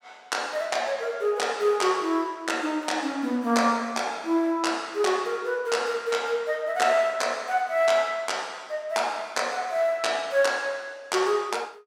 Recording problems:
none

